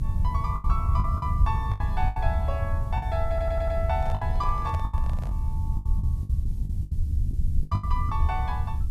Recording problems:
background hiss; slope +1 dB per octave, SNR 28 dB
low-frequency rumble; below 88 Hz, SNR -4 dB
packet loss; 11% of the sound replaced, filled with the last packet
audio stuttering; at 3.5 s
handling noise; from 4 to 5.5 s; peak -5 dB vs average level

